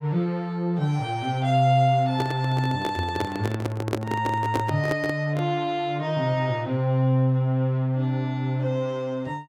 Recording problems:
handling noise; from 2 to 5.5 s; peak +3 dB vs average level

